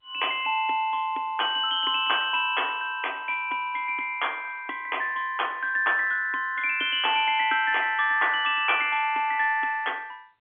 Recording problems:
phone line; 240 Hz to 3.4 kHz, G.711

